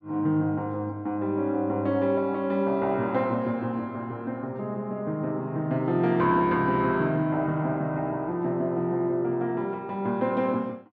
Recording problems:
none

